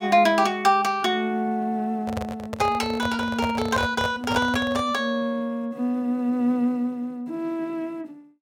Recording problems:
microphone handling noise; from 2 to 5 s; peak -1 dB vs average level

